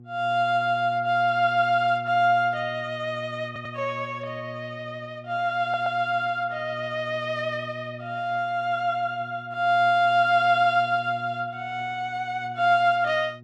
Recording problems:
hum; 60 Hz, harmonics up to 480 Hz, SNR 18 dB
audio stuttering; at 3.5 s and at 5.5 s

